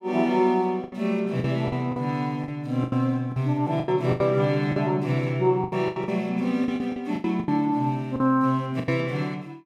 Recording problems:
lost packets; 12% of the sound replaced, filled with the last packet

